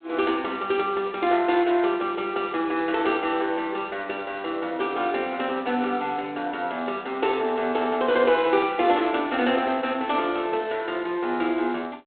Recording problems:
phone line; 280 Hz to 3.9 kHz, G.726

